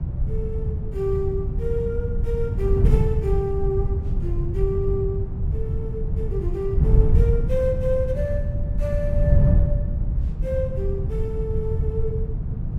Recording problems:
wind on the microphone; below 120 Hz, SNR -4 dB

